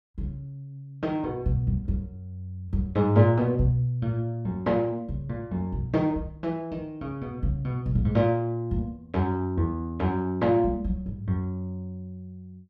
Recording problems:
none

